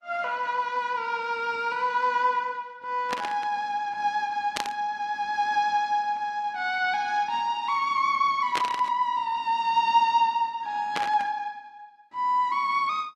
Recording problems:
lossy compression; Opus, log-spectral distance 2 dB, nothing above 11.6 kHz
burst of static; 4 times, first at 3 s; peak +1 dB vs average level

